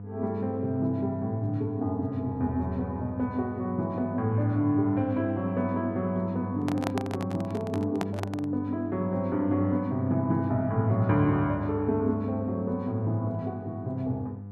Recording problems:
hum; 50 Hz, harmonics up to 700 Hz, SNR 8 dB
handling noise; from 6.5 to 8.5 s; peak +1 dB vs average level

